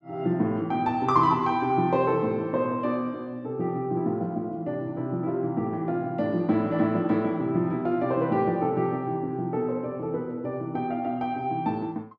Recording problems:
none

